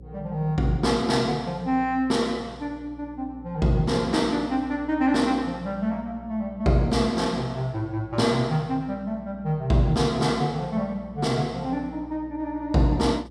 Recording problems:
mains hum; 60 Hz, harmonics up to 540 Hz, SNR 20 dB

